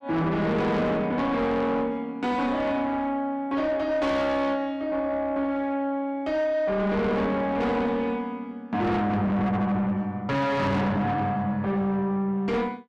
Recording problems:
distortion; soft clipping, signal-to-distortion ratio 7 dB

